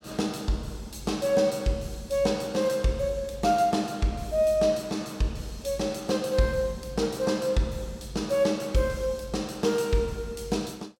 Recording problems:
none

